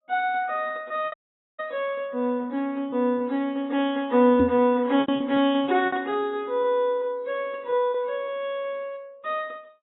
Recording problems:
codec artefacts; AAC, log-spectral distance 2 dB, nothing above 3.5 kHz
packet loss; 7% of the sound replaced, filled with repeated pitch periods
dropout; at 1 s
knock on the microphone; at 4.5 s; peak +6 dB vs average level

